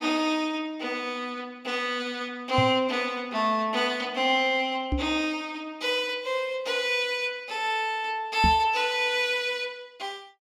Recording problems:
microphone thump; at 2.5 s, at 5 s and at 8.5 s; peak +4 dB vs average level

